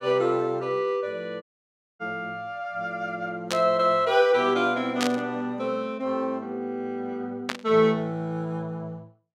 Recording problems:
audio cutting out; at 1.5 s for 0.5 s
burst of static; at 3.5 s, at 5 s and at 7.5 s; peak +2 dB vs average level

